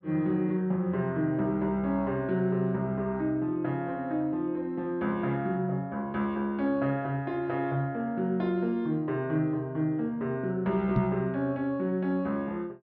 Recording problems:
treble cut off; nothing above 5.7 kHz
microphone bump; at 11 s; peak +5 dB vs average level

